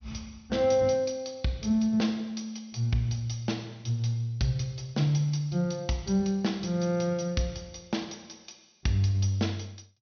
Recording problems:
low-pass filter; nothing above 6.3 kHz

